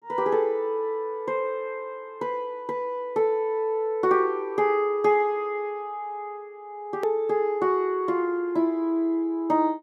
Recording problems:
edit click; at 7 s

